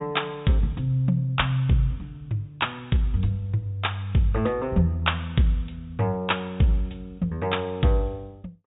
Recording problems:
treble missing; nothing above 4 kHz

